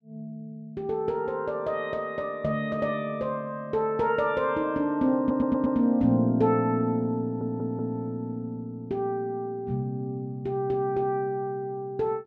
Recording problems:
stutter; at 5 s and at 7 s

